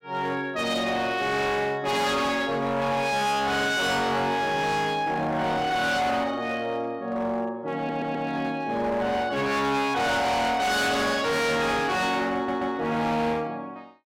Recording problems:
distorted audio; hard clipping, signal-to-distortion ratio 7 dB
stutter; at 8 s and at 12 s

